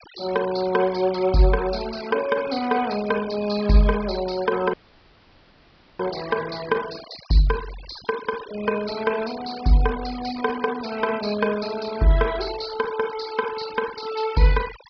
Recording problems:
treble missing; nothing above 5.5 kHz
denoising artefacts; signal-to-artefact ratio 15 dB
audio cutting out; at 4.5 s for 1.5 s

